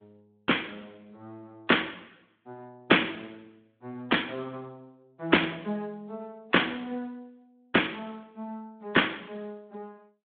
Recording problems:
phone line; 240 Hz to 3.5 kHz, Speex

